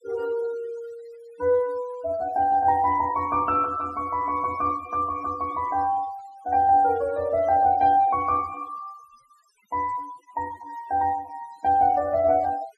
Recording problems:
denoising artefacts; signal-to-artefact ratio 22 dB

